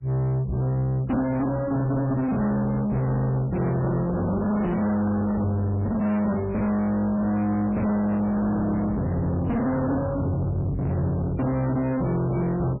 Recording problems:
lossy compression; MP3, log-spectral distance 2 dB, nothing above 2.5 kHz
distortion; soft clipping, signal-to-distortion ratio 7 dB
handling noise; from 3.5 to 5.5 s; peak -2 dB vs average level

